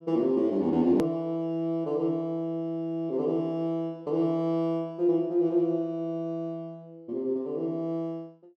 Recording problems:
edit click; at 1 s

